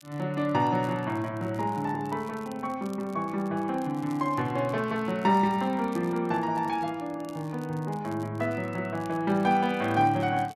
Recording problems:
crackling; vinyl, SNR 27 dB

